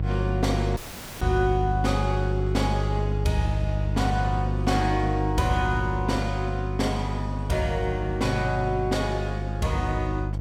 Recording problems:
electrical hum; 50 Hz, harmonics up to 500 Hz, SNR 1 dB
audio cutting out; at 1 s

